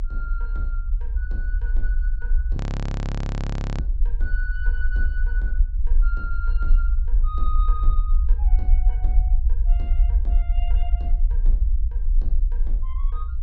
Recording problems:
low-pass filter; nothing above 7.8 kHz
low-frequency rumble; below 48 Hz, strongest tone 30 Hz, SNR -14 dB
audio freezing; at 2.5 s for 1 s

